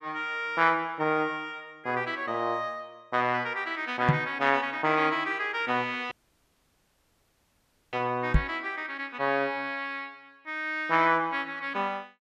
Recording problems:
microphone thump; at 4 s and at 8.5 s; peak +9 dB vs average level
dropout; at 6 s for 2 s

